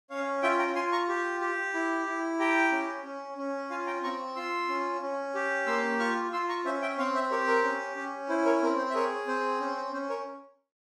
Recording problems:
none

